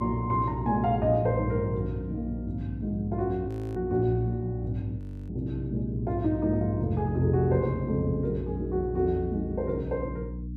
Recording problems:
mains hum; 60 Hz, harmonics up to 300 Hz, SNR 9 dB
audio freezing; at 3.5 s and at 5 s

